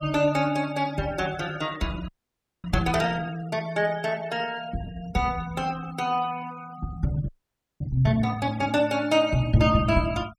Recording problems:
noise reduction artefacts; signal-to-artefact ratio 21 dB
frozen audio; at 2 s for 0.5 s and at 7.5 s for 0.5 s

